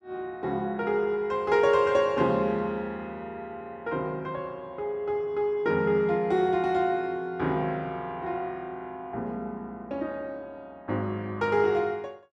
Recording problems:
none

